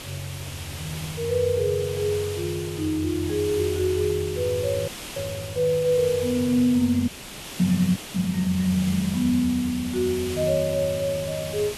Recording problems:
hiss; SNR 11 dB
dropout; at 5 s, at 7 s for 0.5 s and at 8 s

